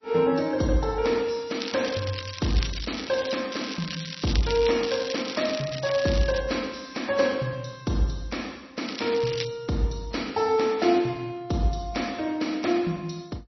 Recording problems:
lossy codec; MP3, log-spectral distance 8 dB, nothing above 5.8 kHz
crackle; from 1.5 to 3.5 s, from 3.5 to 6.5 s and at 9 s; loose cable, SNR 9 dB

